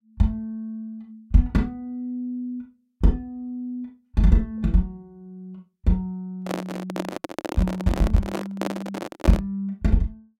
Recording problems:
microphone handling noise; from 6.5 to 9.5 s; peak +4 dB vs average level

